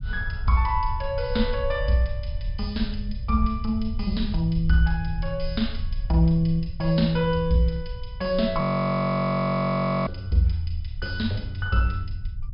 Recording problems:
treble cut off; nothing above 5.5 kHz
rumble; below 78 Hz, SNR 9 dB
audio freezing; at 8.5 s for 1.5 s

